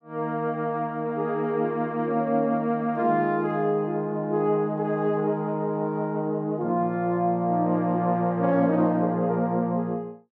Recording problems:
none

